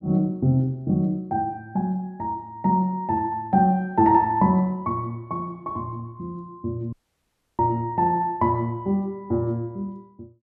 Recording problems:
dropout; at 7 s for 0.5 s

